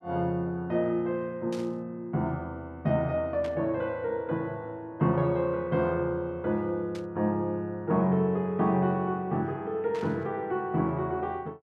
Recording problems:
static burst; 4 times, first at 1.5 s; peak -10 dB vs average level

